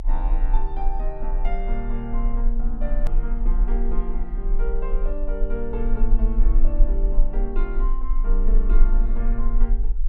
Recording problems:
rumble; below 34 Hz, strongest tone 26 Hz, SNR -8 dB
edit click; at 3 s

